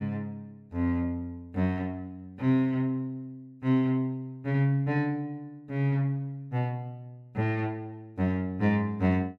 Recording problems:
none

